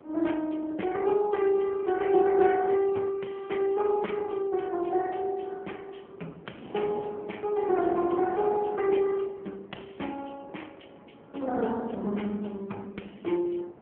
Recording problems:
telephone audio; 170 Hz to 3.2 kHz, AMR-NB
wind noise; below 610 Hz, SNR 18 dB

